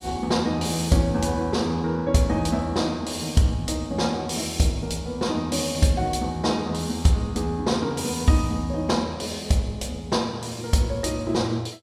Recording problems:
none

